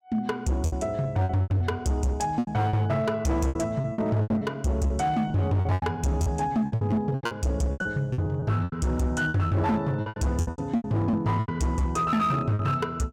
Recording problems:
distortion; hard clipping, signal-to-distortion ratio 11 dB
packet loss; 15% of the sound replaced, filled with repeated pitch periods

